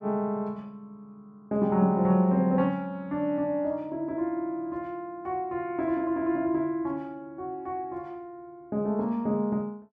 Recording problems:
none

